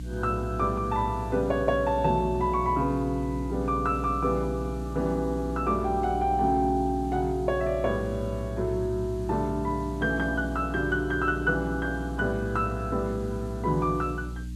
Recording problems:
mains hum; 60 Hz, harmonics up to 300 Hz, SNR 8 dB
background hiss; SNR 27 dB

